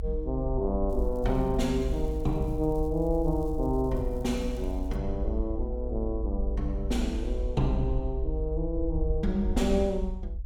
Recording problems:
rumble; below 56 Hz, SNR 3 dB
crackle; from 1 to 5 s; loose cable, SNR 29 dB

